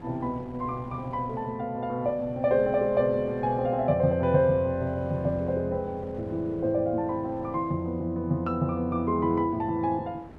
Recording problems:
wind on the microphone; below 520 Hz, SNR 20 dB

